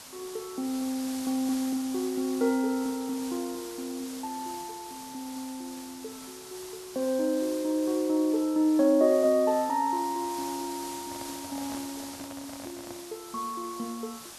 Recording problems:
hiss; slope -1 dB per octave, SNR 13 dB
microphone handling noise; from 11 to 13 s; peak -10 dB vs average level

